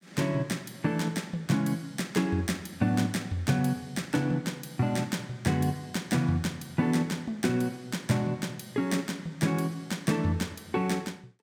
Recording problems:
none

